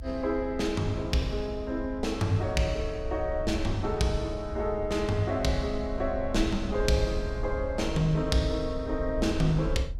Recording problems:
rumble; below 72 Hz, SNR 9 dB

